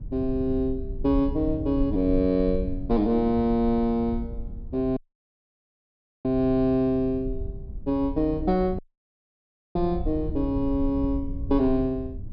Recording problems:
treble cut off; nothing above 5.5 kHz
rumble; below 74 Hz, SNR 10 dB
audio cutting out; at 5 s for 1.5 s and at 9 s for 1 s

